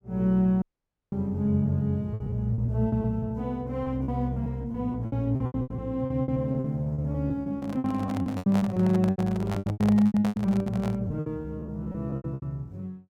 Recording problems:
lost packets; 18% of the sound replaced, filled with repeated pitch periods
audio cutting out; at 0.5 s for 0.5 s
handling noise; from 7.5 to 11 s; peak -3 dB vs average level

